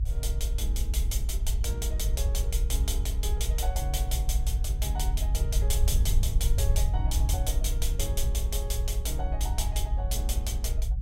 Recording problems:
rumble; below 60 Hz, SNR -5 dB

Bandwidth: 16 kHz